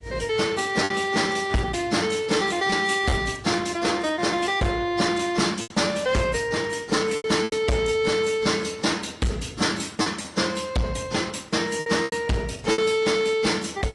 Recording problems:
lossy compression; AAC, log-spectral distance 4 dB, nothing above 10.4 kHz
distorted audio; soft clipping, signal-to-distortion ratio 7 dB
packet loss; 5% of the sound replaced, filled with repeated pitch periods

